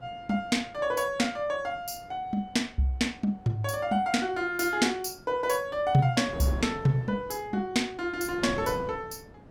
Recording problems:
wind noise; below 510 Hz, SNR 17 dB

